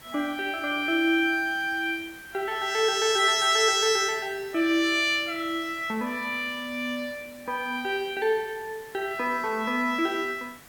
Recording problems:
hiss; SNR 22 dB

